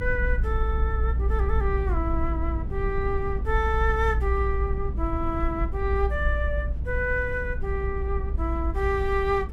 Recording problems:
rumble; below 60 Hz, strongest tone 58 Hz, SNR 0 dB

